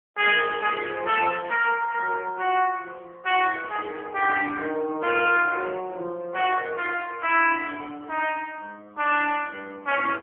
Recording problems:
telephone audio; 220 Hz to 3.3 kHz, AMR-NB

